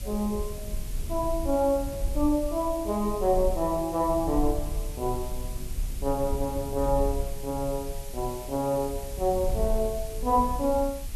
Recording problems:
background hiss; slope +4 dB per octave, SNR 16 dB
rumble; below 60 Hz, SNR 8 dB

